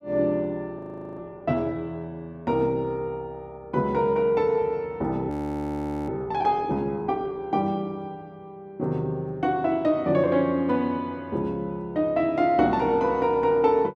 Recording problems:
audio freezing; at 1 s and at 5.5 s for 1 s

